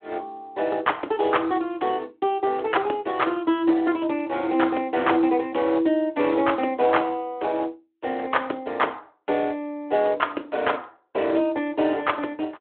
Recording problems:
phone line; 260 Hz to 3.4 kHz, Speex

